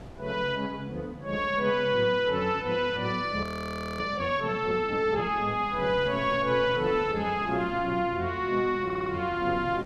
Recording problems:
wind on the microphone; below 550 Hz, SNR 20 dB
audio freezing; at 3.5 s for 0.5 s
audio stuttering; at 9 s

